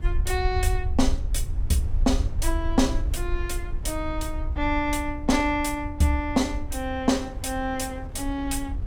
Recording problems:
electrical hum; 60 Hz, harmonics up to 1.2 kHz, SNR 23 dB
rumble; below 66 Hz, SNR 4 dB
wind on the microphone; below 620 Hz, SNR 22 dB

